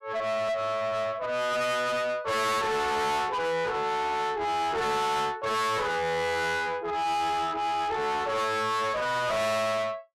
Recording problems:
distorted audio; soft clipping, signal-to-distortion ratio 6 dB

